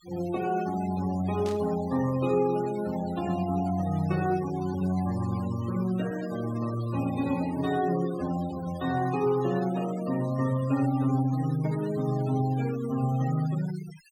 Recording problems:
noise reduction artefacts; signal-to-artefact ratio 17 dB
static burst; at 1.5 s; peak -11 dB vs average level

